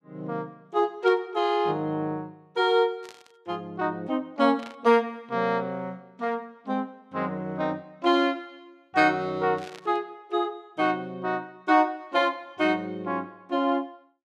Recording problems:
static burst; 4 times, first at 1 s; peak -12 dB vs average level

